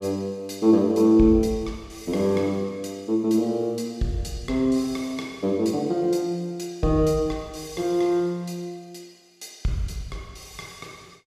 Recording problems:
none

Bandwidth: 15.5 kHz